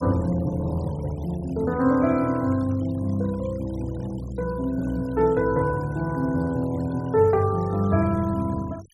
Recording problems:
noise reduction artefacts; signal-to-artefact ratio 24 dB

